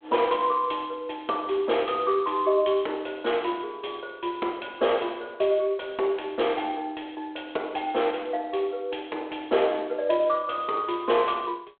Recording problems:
telephone audio; 260 Hz to 3.4 kHz, G.726

